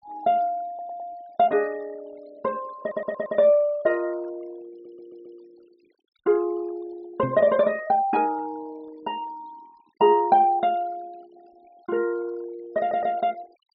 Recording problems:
treble cut off; nothing above 5.4 kHz
noise reduction artefacts; signal-to-artefact ratio 27 dB
audio stuttering; 4 times, first at 0.5 s
microphone bump; at 7 s; peak -2 dB vs average level

